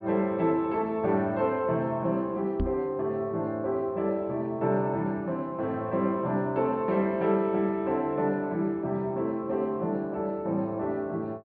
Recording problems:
treble missing; nothing above 4.7 kHz
microphone bump; at 2.5 s; peak +2 dB vs average level

